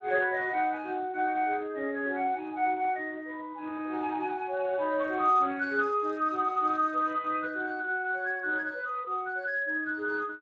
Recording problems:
lossy codec; Speex, log-spectral distance 3 dB

